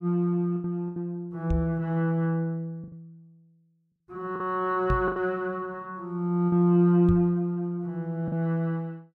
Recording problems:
packet loss; 5% of the sound replaced, filled with the last packet
microphone bump; at 1.5 s, at 5 s and at 7 s; peak +2 dB vs average level

